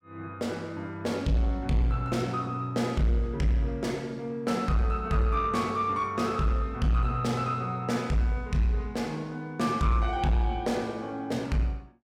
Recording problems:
distorted audio; soft clipping, signal-to-distortion ratio 11 dB

